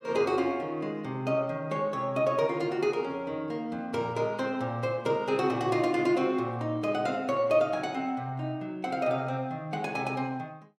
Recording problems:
none

